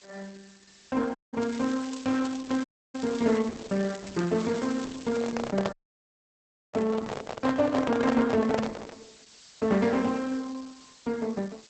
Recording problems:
lossy codec; Opus, log-spectral distance 9 dB, nothing above 7.6 kHz
background hiss; slope +2 dB per octave, SNR 23 dB
audio cutting out; at 1 s, at 2.5 s and at 5.5 s for 1 s
crackling; from 1.5 to 5.5 s; loose cable, SNR 17 dB
microphone handling noise; from 5 to 9 s; peak +2 dB vs average level

